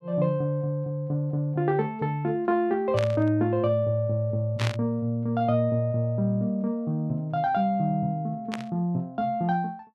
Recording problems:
burst of static; at 3 s, at 4.5 s and at 8.5 s; peak -2 dB vs average level

